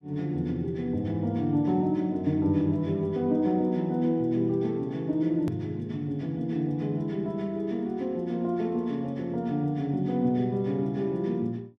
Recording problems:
edit click; at 5.5 s

